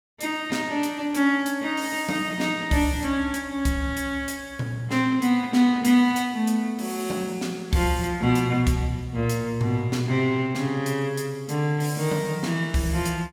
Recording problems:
none

